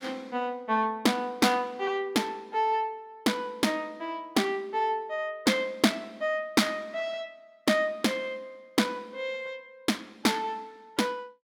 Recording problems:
none

